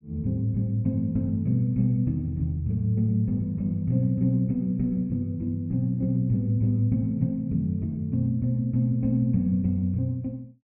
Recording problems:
treble missing; nothing above 3 kHz

